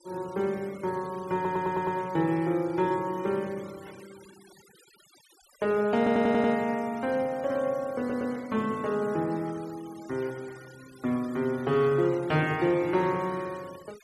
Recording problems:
noise reduction artefacts; signal-to-artefact ratio 23 dB
stutter; at 1.5 s, at 6 s and at 8 s

